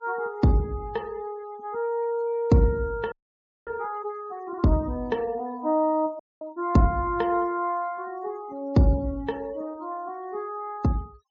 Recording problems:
low-pass filter; nothing above 7.4 kHz
denoising artefacts; signal-to-artefact ratio 27 dB
frozen audio; at 3 s for 0.5 s and at 6 s

